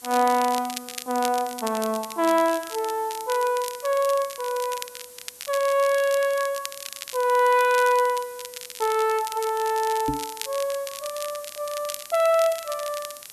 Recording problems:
hiss; SNR 19 dB
crackling; vinyl, SNR 13 dB
microphone bump; at 10 s; peak 0 dB vs average level

